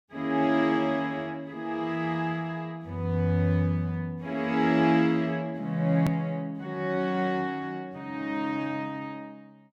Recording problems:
click at an edit; at 6 s

